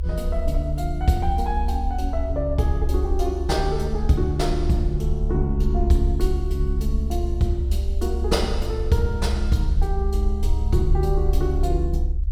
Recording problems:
low-frequency rumble; below 68 Hz, SNR 0 dB

